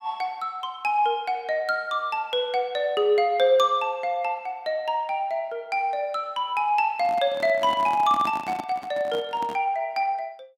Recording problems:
microphone handling noise; from 7 to 9.5 s; peak -6 dB vs average level

